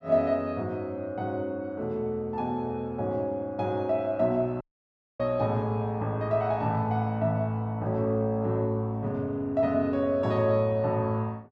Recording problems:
dropout; at 4.5 s for 0.5 s

